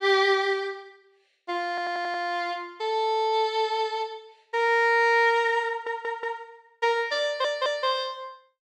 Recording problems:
stutter; at 1.5 s, at 5.5 s and at 7 s

